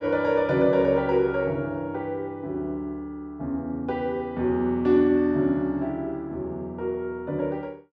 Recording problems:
none

